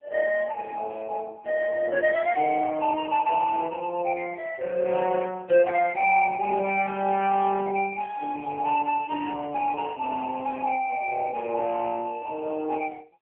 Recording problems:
phone line; 260 Hz to 3.3 kHz, AMR-NB

